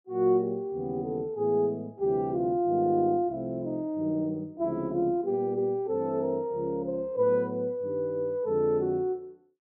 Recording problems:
none

